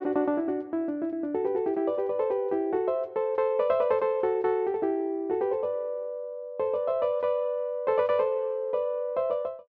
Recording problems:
none

